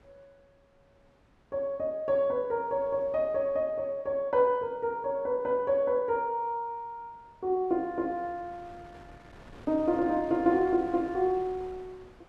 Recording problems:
wind noise; below 1 kHz, SNR 23 dB

